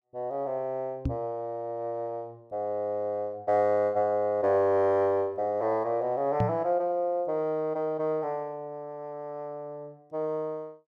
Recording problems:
knock on the microphone; at 1 s and at 6.5 s; peak +4 dB vs average level

